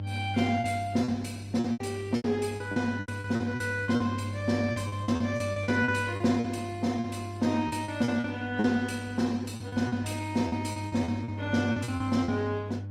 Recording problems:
codec artefacts; Opus, log-spectral distance 3 dB, nothing above 18.9 kHz
hum; 50 Hz, harmonics up to 600 Hz, SNR 8 dB
lost packets; 14% of the sound replaced, filled with repeated pitch periods

